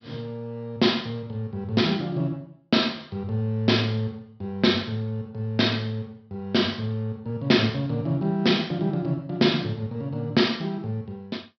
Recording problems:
treble cut off; nothing above 5.5 kHz

